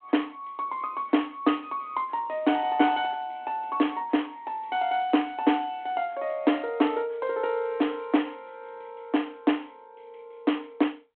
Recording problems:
telephone audio; 220 Hz to 3.3 kHz, G.726

